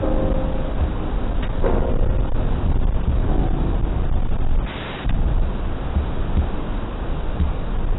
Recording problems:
lossy codec; AAC, log-spectral distance 2 dB, nothing above 3.8 kHz
distorted audio; hard clipping, uneven, signal-to-distortion ratio 11 dB
hiss; SNR 3 dB
rumble; below 72 Hz, SNR -2 dB
frozen audio; at 4.5 s

